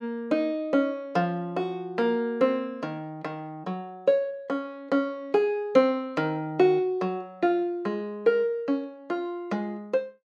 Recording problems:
none

